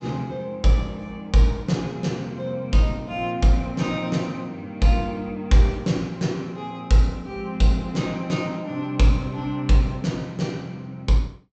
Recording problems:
low-pass filter; nothing above 8 kHz

